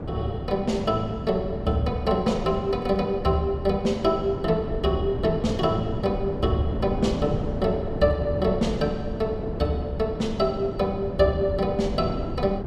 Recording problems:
wind noise; below 330 Hz, SNR 7 dB

